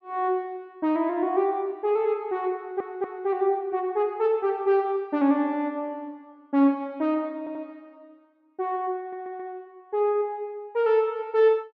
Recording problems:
audio stuttering; at 2.5 s, at 7.5 s and at 9 s

